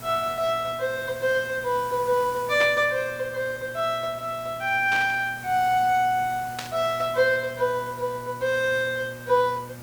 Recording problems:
electrical hum; 60 Hz, harmonics up to 1.4 kHz, SNR 21 dB
background hiss; slope -3 dB per octave, SNR 19 dB
burst of static; at 2.5 s, at 5 s and at 6.5 s; peak -4 dB vs average level

